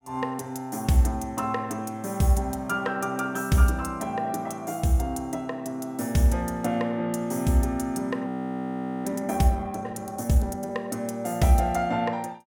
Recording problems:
audio freezing; at 8.5 s for 1 s

